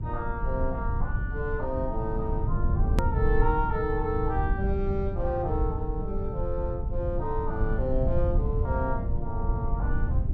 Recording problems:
low-frequency rumble; below 96 Hz, SNR -2 dB
click at an edit; at 3 s

